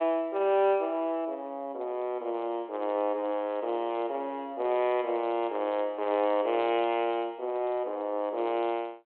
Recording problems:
phone line; 280 Hz to 3.4 kHz, G.726

